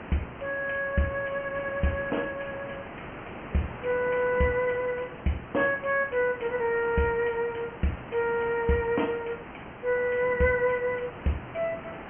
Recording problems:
treble missing; nothing above 3 kHz
background hiss; SNR 13 dB

